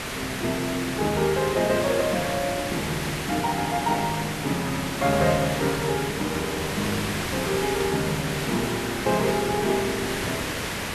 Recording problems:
background hiss; slope -3 dB per octave, SNR 3 dB

